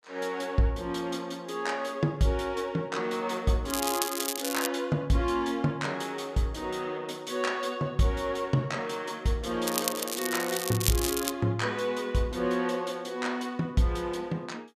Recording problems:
crackling; at 3.5 s and from 9.5 to 11 s; loose cable, SNR 2 dB

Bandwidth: 14.5 kHz